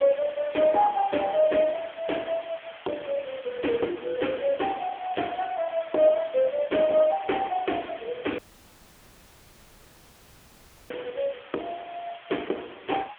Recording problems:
telephone audio; 260 Hz to 3.4 kHz, AMR-NB
hiss; SNR 19 dB
dropout; at 8.5 s for 2.5 s

